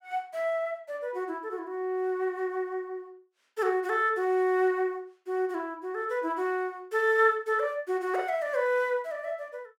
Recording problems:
none

